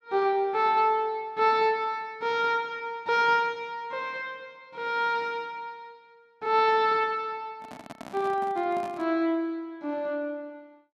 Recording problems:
microphone handling noise; from 7.5 to 9 s; peak -10 dB vs average level

